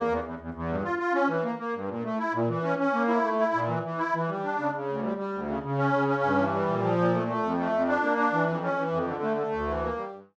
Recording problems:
none

